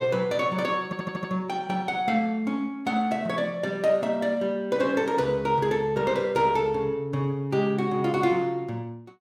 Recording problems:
audio stuttering; at 1 s

